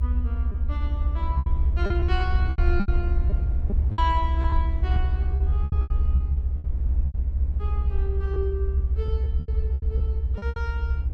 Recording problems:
rumble; below 70 Hz, SNR -9 dB
packet loss; 12% of the sound replaced, filled with repeated pitch periods

